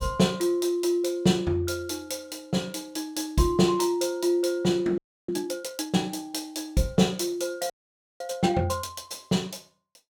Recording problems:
audio freezing; at 5 s and at 7.5 s

